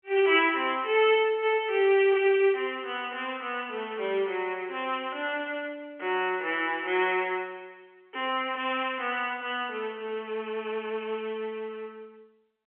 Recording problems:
telephone audio; 280 Hz to 3.3 kHz, G.711

